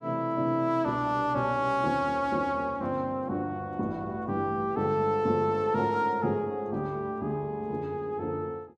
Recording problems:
none

